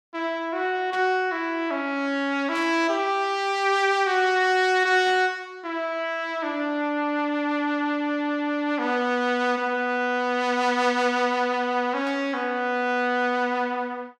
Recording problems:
static burst; 4 times, first at 1 s; peak -13 dB vs average level

